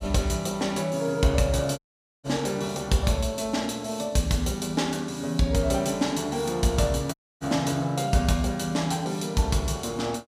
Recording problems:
dropout; at 2 s and at 7 s

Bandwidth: 15 kHz